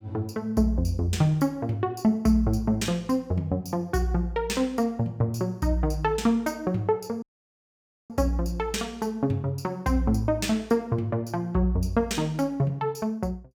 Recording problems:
audio cutting out; at 7 s for 1 s

